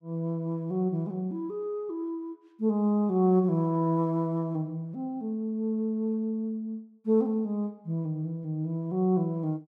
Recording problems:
none

